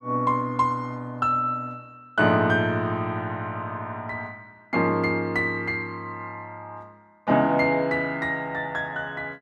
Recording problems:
none

